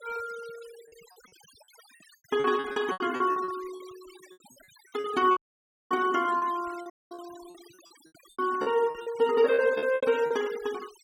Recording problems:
noise reduction artefacts; signal-to-artefact ratio 20 dB
lost packets; 14% of the sound replaced, filled with repeated pitch periods
audio cutting out; at 5.5 s for 0.5 s and at 7 s

